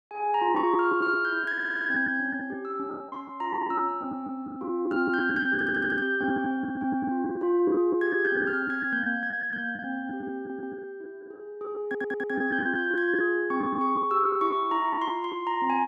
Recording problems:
lost packets; 9% of the sound replaced, filled with the last packet
audio stuttering; 4 times, first at 1.5 s

